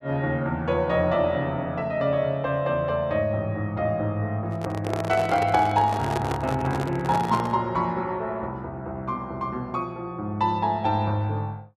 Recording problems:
microphone handling noise; from 4.5 to 7.5 s; peak +1 dB vs average level

